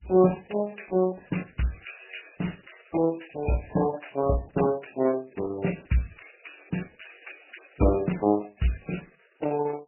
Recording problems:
lossy compression; Opus, then MP3, log-spectral distance 9 dB, nothing above 2.9 kHz

